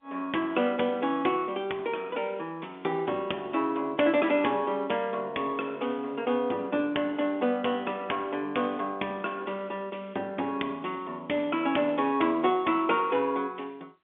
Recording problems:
phone line; 190 Hz to 3.6 kHz, G.711

